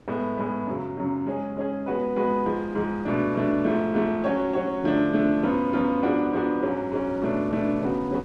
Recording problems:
wind on the microphone; below 550 Hz, SNR 21 dB

